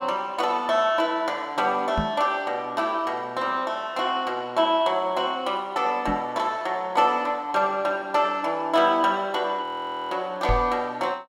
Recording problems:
microphone thump; at 2 s, at 6 s and at 10 s; peak +1 dB vs average level
audio freezing; at 9.5 s

